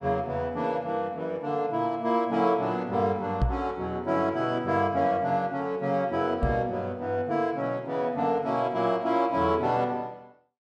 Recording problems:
microphone thump; at 3.5 s and at 6.5 s; peak +5 dB vs average level

